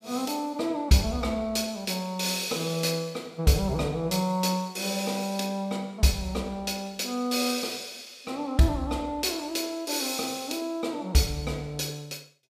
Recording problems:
none

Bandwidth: 15.5 kHz